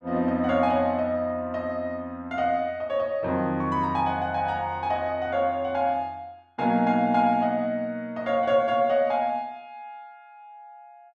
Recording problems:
none

